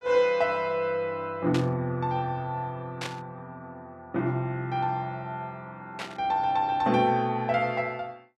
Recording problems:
static burst; at 1.5 s, at 3 s and at 6 s; peak -3 dB vs average level

